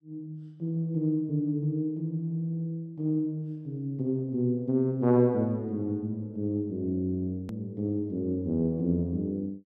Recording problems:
edit click; at 7.5 s

